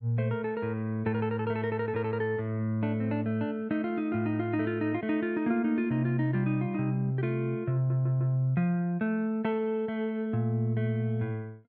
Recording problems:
stutter; at 8 s

